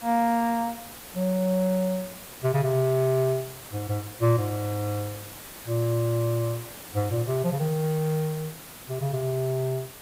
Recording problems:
hiss; slope -3 dB per octave, SNR 14 dB

